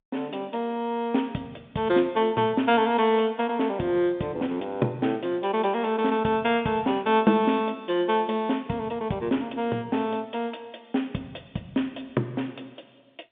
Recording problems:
telephone audio; 150 Hz to 3.6 kHz, G.711

